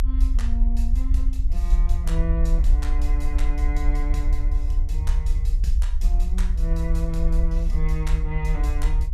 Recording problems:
rumble; below 56 Hz, strongest tone 32 Hz, SNR -9 dB

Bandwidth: 14.5 kHz